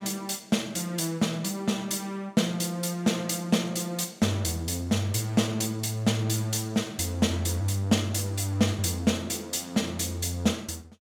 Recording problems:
none

